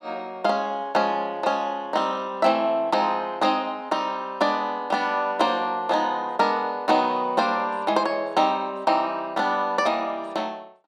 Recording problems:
none

